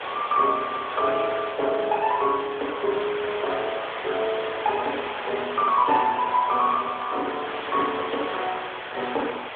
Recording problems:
telephone audio; 320 Hz to 3.6 kHz, AMR-NB
hiss; SNR 8 dB

